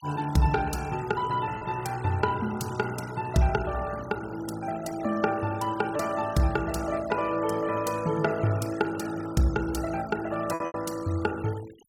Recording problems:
denoising artefacts; signal-to-artefact ratio 18 dB
packet loss; 1.6% of the sound replaced, filled with repeated pitch periods

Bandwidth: 17 kHz